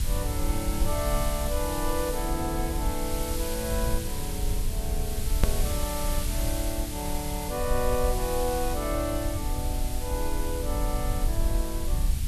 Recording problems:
background hiss; slope +2 dB per octave, SNR 4 dB
low-frequency rumble; below 66 Hz, SNR 0 dB
edit click; at 5.5 s

